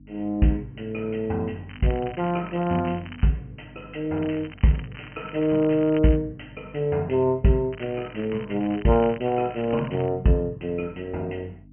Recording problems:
low-pass filter; nothing above 3.1 kHz
electrical hum; 50 Hz, harmonics up to 300 Hz, SNR 23 dB
crackle; from 1.5 to 3.5 s, from 4 to 6 s and from 7.5 to 10 s; loose cable, SNR 19 dB

